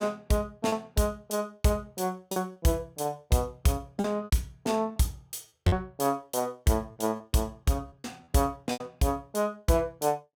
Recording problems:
lost packets; 6% of the sound replaced, filled with repeated pitch periods

